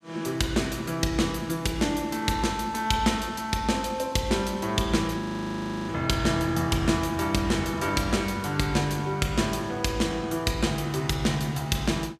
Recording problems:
audio freezing; at 5 s for 0.5 s

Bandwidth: 15 kHz